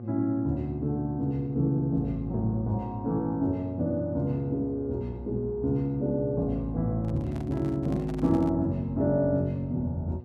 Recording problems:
electrical hum; 60 Hz, harmonics up to 840 Hz, SNR 14 dB
microphone handling noise; from 7 to 8.5 s; peak -11 dB vs average level

